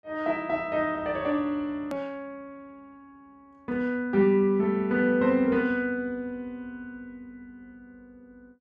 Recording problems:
click at an edit; at 2 s

